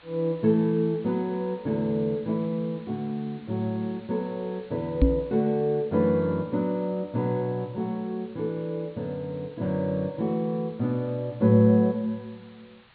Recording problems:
treble missing; nothing above 4.3 kHz
hiss; SNR 28 dB
microphone thump; at 5 s; peak +10 dB vs average level

